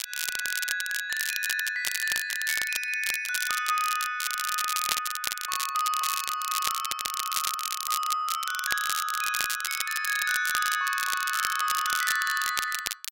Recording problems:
crackling; vinyl, SNR 2 dB

